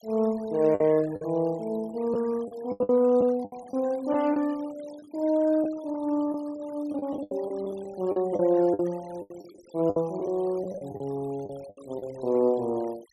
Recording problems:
noise reduction artefacts; signal-to-artefact ratio 24 dB
packet loss; 10% of the sound replaced, filled with the last packet

